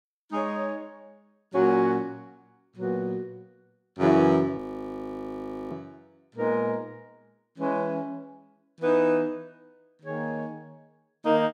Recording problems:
audio freezing; at 4.5 s for 1 s

